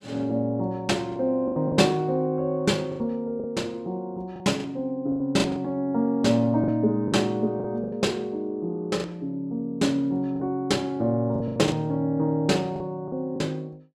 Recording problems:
packet loss; 8% of the sound replaced, filled with the last packet

